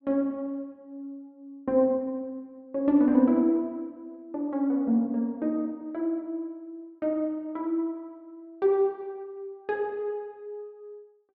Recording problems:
none

